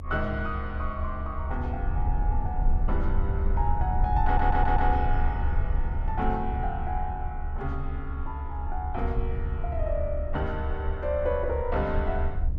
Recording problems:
rumble; below 72 Hz, strongest tone 24 Hz, SNR -1 dB
stutter; at 4.5 s

